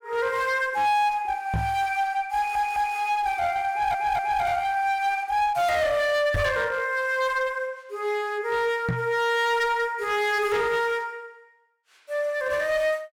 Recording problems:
distorted audio; hard clipping, uneven, signal-to-distortion ratio 10 dB
knock on the microphone; at 1.5 s, at 6.5 s and at 9 s; peak +1 dB vs average level
stutter; at 2.5 s and at 3.5 s

